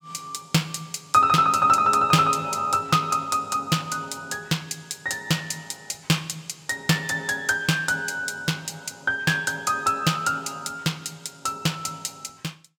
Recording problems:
none

